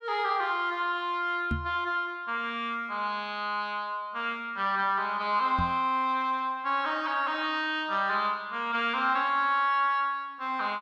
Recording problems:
knock on the microphone; at 1.5 s and at 5.5 s; peak +1 dB vs average level

